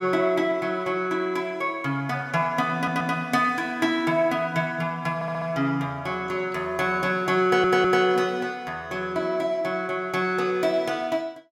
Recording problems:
stutter; at 2.5 s, at 5 s and at 7.5 s

